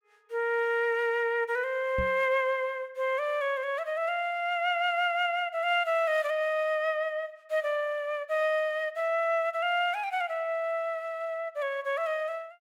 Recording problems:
microphone bump; at 2 s; peak -3 dB vs average level

